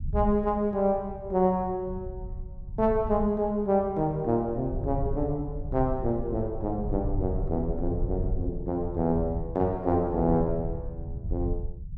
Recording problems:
low-frequency rumble; below 94 Hz, SNR 8 dB

